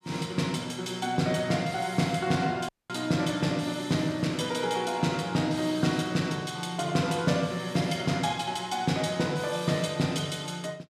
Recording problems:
dropout; at 2.5 s

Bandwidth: 14.5 kHz